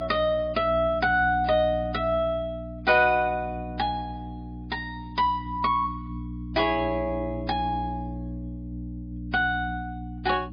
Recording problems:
lossy compression; MP3, log-spectral distance 2 dB, nothing above 5 kHz
hum; 60 Hz, harmonics up to 300 Hz, SNR 11 dB

